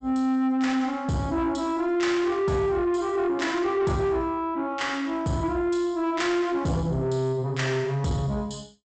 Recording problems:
treble missing; nothing above 8 kHz
distorted audio; soft clipping, signal-to-distortion ratio 12 dB

